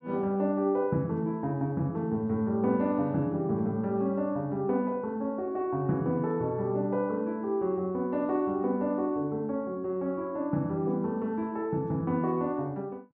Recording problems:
none

